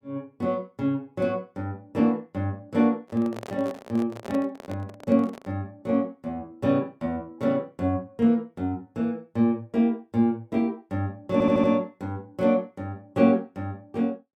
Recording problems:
microphone handling noise; from 3 to 5.5 s; peak -8 dB vs average level
stutter; at 11 s

